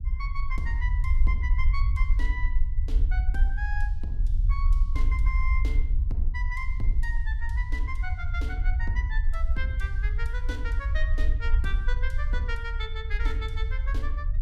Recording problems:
low-frequency rumble; below 56 Hz, SNR -9 dB

